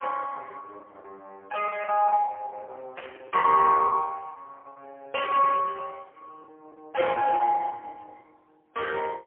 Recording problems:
phone line; 340 Hz to 3.1 kHz, AMR-NB, then MP3
packet loss; 10% of the sound replaced, filled with the last packet
static burst; at 3 s and at 7 s; peak -11 dB vs average level

